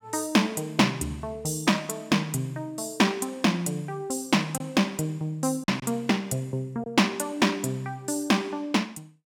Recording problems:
packet loss; 1.1% of the sound replaced, filled with silence

